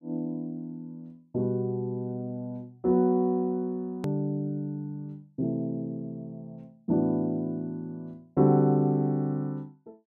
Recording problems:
hard cut with a click; at 4 s

